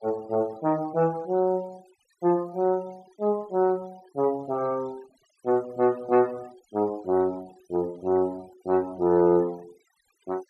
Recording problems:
noise reduction artefacts; signal-to-artefact ratio 27 dB

